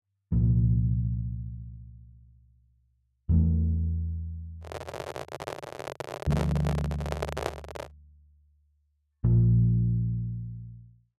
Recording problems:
microphone handling noise; from 4.5 to 8 s; peak +1 dB vs average level

